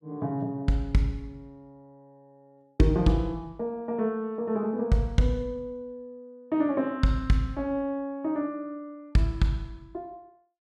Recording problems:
none

